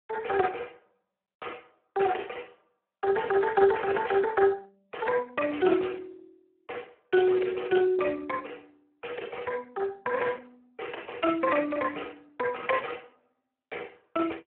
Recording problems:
telephone audio; 320 Hz to 3.3 kHz, Speex

